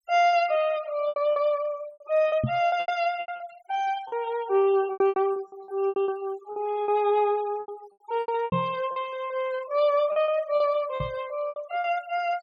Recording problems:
noise reduction artefacts; signal-to-artefact ratio 22 dB
packet loss; 13% of the sound replaced, filled with repeated pitch periods
knock on the microphone; at 2.5 s, at 8.5 s and at 11 s; peak +3 dB vs average level

